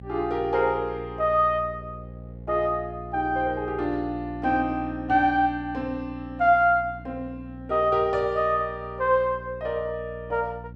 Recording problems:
hum; 60 Hz, harmonics up to 540 Hz, SNR 16 dB

